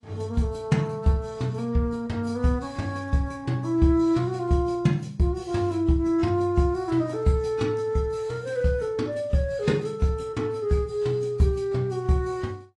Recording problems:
lossy codec; AAC, log-spectral distance 2 dB, nothing above 11 kHz

